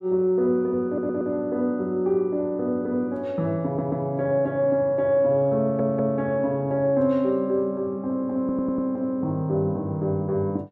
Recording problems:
stutter; 4 times, first at 1 s

